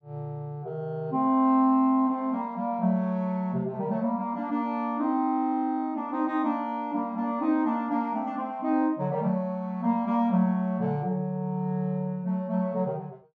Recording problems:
none

